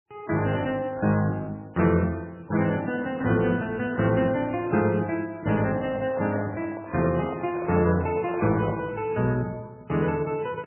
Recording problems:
codec artefacts; MP3, log-spectral distance 3 dB, nothing above 2.5 kHz
handling noise; from 5.5 to 9 s; peak -4 dB vs average level

